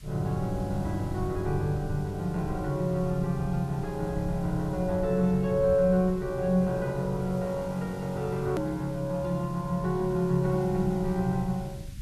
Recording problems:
background hiss; SNR 25 dB
rumble; below 120 Hz, SNR 14 dB
edit click; at 8.5 s

